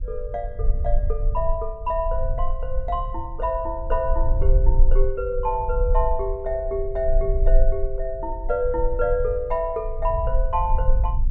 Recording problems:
low-frequency rumble; below 44 Hz, strongest tone 22 Hz, SNR 1 dB

